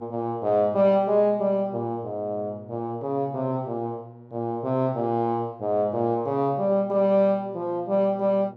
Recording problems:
mains hum; 60 Hz, harmonics up to 1.1 kHz, SNR 22 dB

